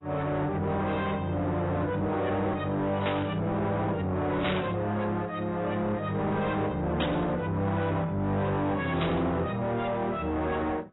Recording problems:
lossy compression; AAC, log-spectral distance 2 dB, nothing above 3.8 kHz
distortion; soft clipping, signal-to-distortion ratio 7 dB
burst of static; 4 times, first at 3 s; peak 0 dB vs average level

